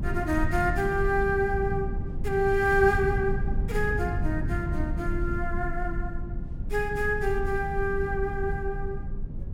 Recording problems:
low-frequency rumble; below 110 Hz, SNR 4 dB

